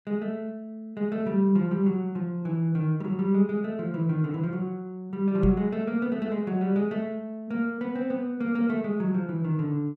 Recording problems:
knock on the microphone; at 5.5 s; peak +3 dB vs average level

